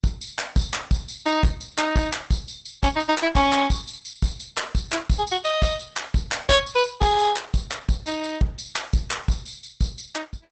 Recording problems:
lossy compression; Opus, log-spectral distance 8 dB, nothing above 8.2 kHz
distorted audio; hard clipping, uneven, signal-to-distortion ratio 10 dB

